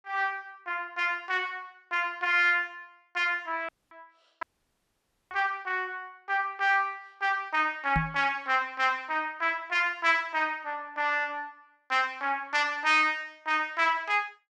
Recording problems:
audio cutting out; at 3.5 s and at 4.5 s for 1 s
knock on the microphone; at 5.5 s and at 8 s; peak +1 dB vs average level

